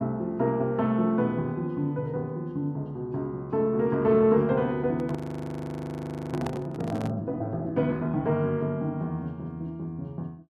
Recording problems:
handling noise; from 5 to 7 s; peak -3 dB vs average level
frozen audio; at 5 s for 1 s

